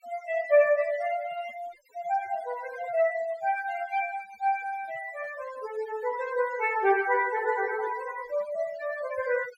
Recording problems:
denoising artefacts; signal-to-artefact ratio 16 dB

